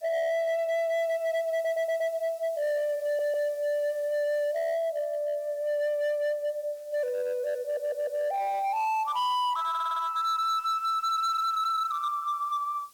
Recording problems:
distortion; hard clipping, signal-to-distortion ratio 11 dB
background hiss; SNR 27 dB
stutter; 4 times, first at 1.5 s

